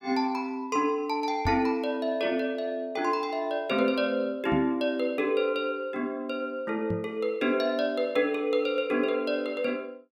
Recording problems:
microphone thump; at 1.5 s, at 4.5 s and at 7 s; peak 0 dB vs average level

